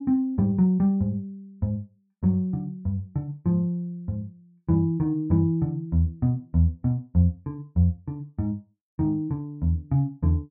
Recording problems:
none

